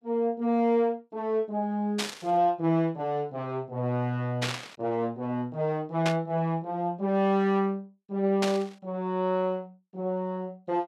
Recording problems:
static burst; 4 times, first at 2 s; peak +3 dB vs average level

